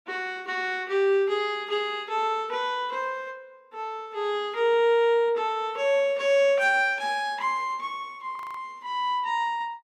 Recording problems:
frozen audio; at 8.5 s

